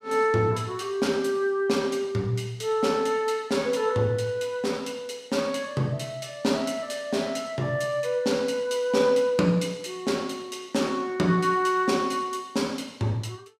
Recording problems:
none

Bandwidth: 15.5 kHz